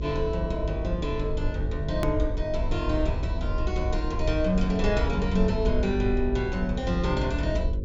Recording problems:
treble cut off; nothing above 7.5 kHz
hum; 50 Hz, harmonics up to 550 Hz, SNR 6 dB
rumble; below 66 Hz, SNR 4 dB
click at an edit; at 2 s

